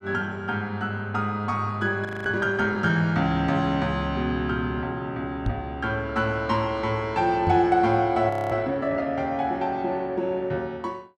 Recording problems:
frozen audio; at 2 s and at 8.5 s
microphone bump; at 5.5 s and at 7.5 s; peak +3 dB vs average level

